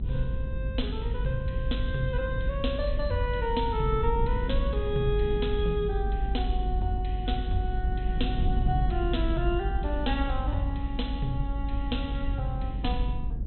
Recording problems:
treble missing; nothing above 4.1 kHz
low-frequency rumble; below 64 Hz, strongest tone 48 Hz, SNR 0 dB
wind on the microphone; below 94 Hz, SNR 8 dB

